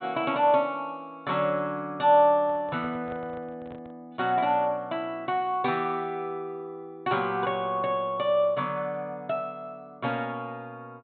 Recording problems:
treble cut off; nothing above 4 kHz
microphone handling noise; from 2.5 to 4 s; peak -12 dB vs average level

